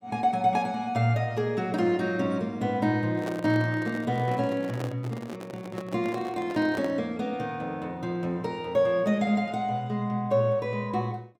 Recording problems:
microphone handling noise; from 3 to 7 s; peak -2 dB vs average level

